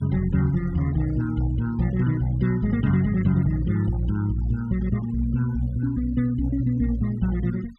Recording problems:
denoising artefacts; signal-to-artefact ratio 23 dB

